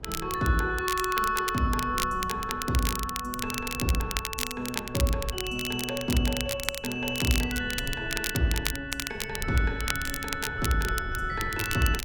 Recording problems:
rumble; below 120 Hz, SNR 14 dB
crackling; vinyl, SNR 5 dB

